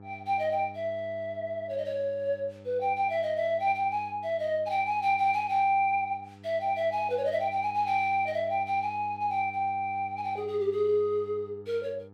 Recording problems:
hum; 50 Hz, harmonics up to 1.3 kHz, SNR 20 dB

